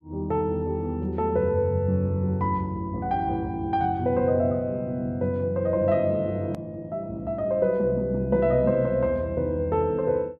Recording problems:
edit click; at 6.5 s

